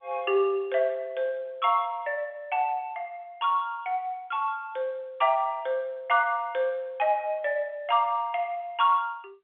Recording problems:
telephone audio; 300 Hz to 3.4 kHz, G.711

